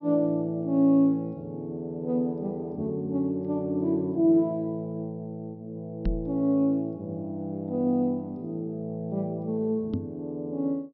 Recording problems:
treble cut off; nothing above 5.7 kHz
microphone thump; at 6 s and at 10 s; peak +1 dB vs average level

